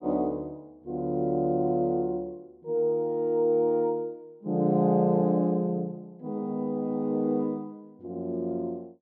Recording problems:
none

